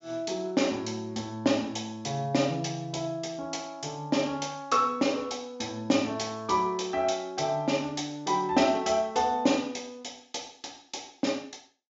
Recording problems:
treble missing; nothing above 7.3 kHz

